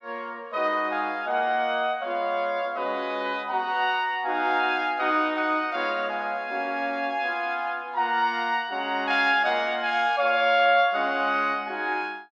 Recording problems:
none

